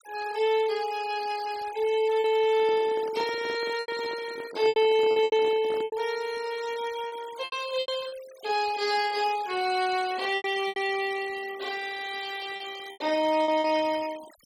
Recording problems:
noise reduction artefacts; signal-to-artefact ratio 17 dB
packet loss; 7% of the sound replaced, filled with repeated pitch periods
microphone handling noise; from 2.5 to 6 s; peak -7 dB vs average level

